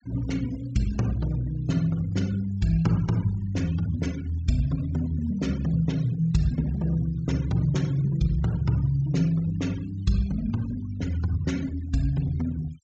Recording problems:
treble missing; nothing above 8 kHz
noise reduction artefacts; signal-to-artefact ratio 21 dB

